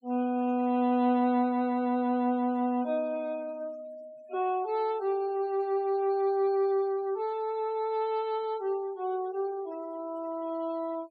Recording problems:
noise reduction artefacts; signal-to-artefact ratio 25 dB

